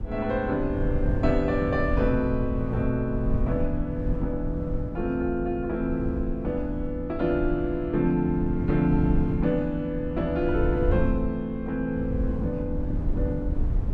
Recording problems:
wind noise; below 100 Hz, SNR 5 dB

